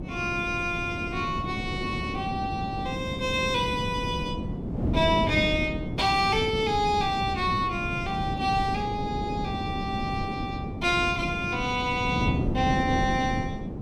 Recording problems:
wind noise; below 290 Hz, SNR 5 dB

